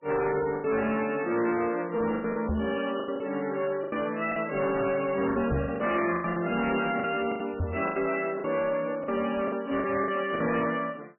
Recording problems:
lossy codec; MP3, log-spectral distance 5 dB, nothing above 2.7 kHz
distortion; hard clipping, signal-to-distortion ratio 10 dB
packet loss; 10% of the sound replaced, filled with the last packet
microphone bump; at 2.5 s, at 5.5 s and at 7.5 s; peak +3 dB vs average level

